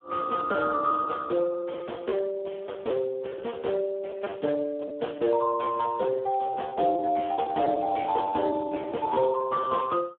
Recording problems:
phone line; 240 Hz to 2.1 kHz, Speex
lost packets; 15% of the sound replaced, filled with repeated pitch periods

